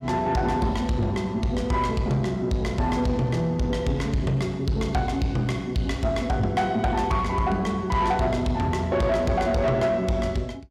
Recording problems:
distortion; soft clipping, signal-to-distortion ratio 11 dB

